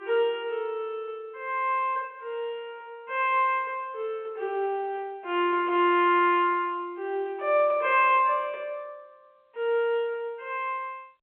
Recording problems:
telephone audio; 280 Hz to 3.3 kHz, G.711

